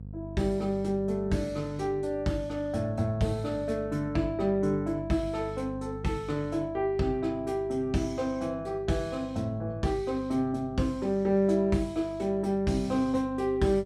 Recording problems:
electrical hum; 50 Hz, harmonics up to 500 Hz, SNR 14 dB

